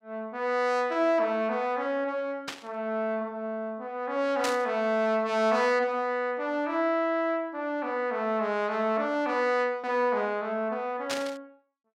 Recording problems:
static burst; at 2.5 s, at 4.5 s and at 11 s; peak 0 dB vs average level

